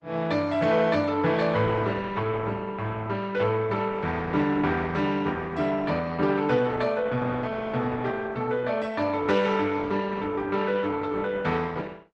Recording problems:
lossy compression; Opus, log-spectral distance 3 dB

